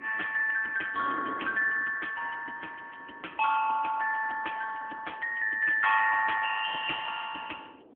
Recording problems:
telephone audio; 370 Hz to 3.2 kHz, AMR-NB
wind noise; below 550 Hz, SNR 19 dB

